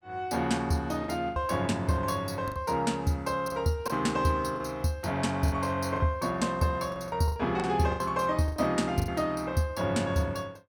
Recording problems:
lost packets; 8% of the sound replaced, filled with the last packet

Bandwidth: 17 kHz